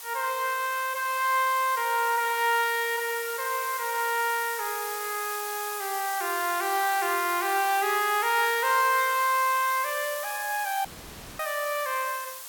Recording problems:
background hiss; SNR 9 dB
dropout; at 11 s for 0.5 s

